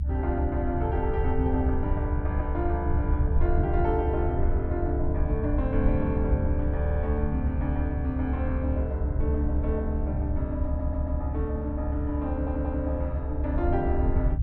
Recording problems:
low-frequency rumble; below 78 Hz, SNR -2 dB
stutter; at 7 s, at 11 s and at 12 s

